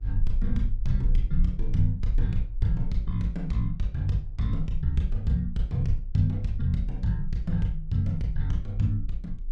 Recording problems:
hum; 50 Hz, harmonics up to 900 Hz, SNR 35 dB
rumble; below 38 Hz, strongest tone 26 Hz, SNR 6 dB

